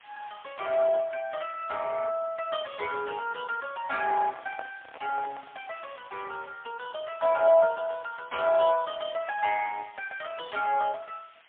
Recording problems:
telephone audio; 280 Hz to 3.4 kHz, AMR-NB, then MP3
hiss; SNR 27 dB
microphone handling noise; from 4 to 5.5 s; peak -10 dB vs average level

